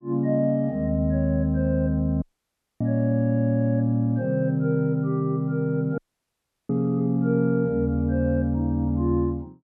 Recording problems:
audio cutting out; at 2 s for 0.5 s and at 6 s for 0.5 s

